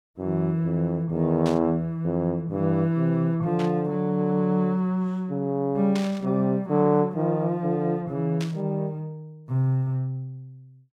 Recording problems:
static burst; 4 times, first at 1.5 s; peak -7 dB vs average level

